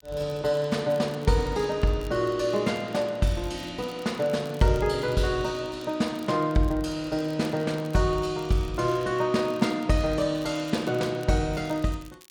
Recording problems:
crackle; vinyl, SNR 26 dB

